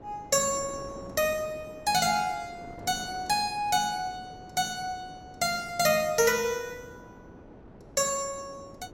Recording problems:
wind noise; below 560 Hz, SNR 20 dB

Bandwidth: 16.5 kHz